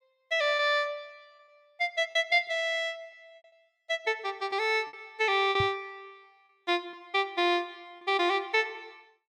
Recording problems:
lost packets; 4% of the sound replaced, filled with repeated pitch periods
microphone bump; at 5.5 s; peak -2 dB vs average level

